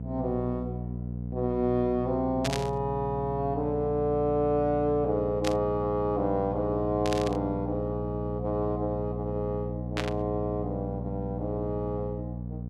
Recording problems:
hum; 60 Hz, harmonics up to 540 Hz, SNR 6 dB
static burst; 4 times, first at 2.5 s; peak +2 dB vs average level

